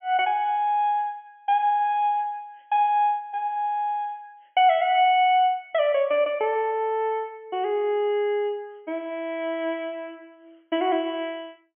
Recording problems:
low-pass filter; nothing above 3.2 kHz

